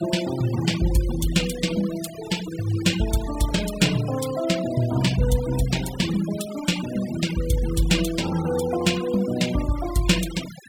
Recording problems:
noise reduction artefacts; signal-to-artefact ratio 13 dB

